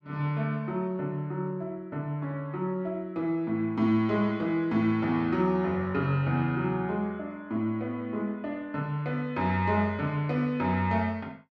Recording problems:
none

